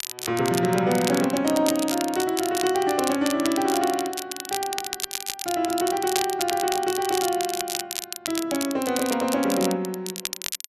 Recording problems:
crackling; vinyl, SNR 6 dB

